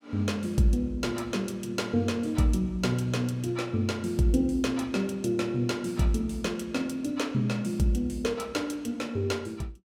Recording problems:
none

